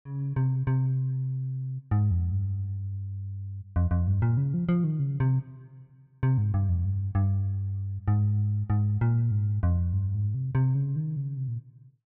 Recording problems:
none

